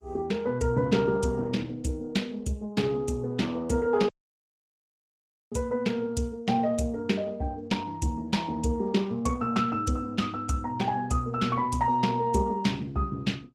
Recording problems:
codec artefacts; Opus, log-spectral distance 2 dB, nothing above 17.7 kHz
audio cutting out; at 4 s for 1.5 s

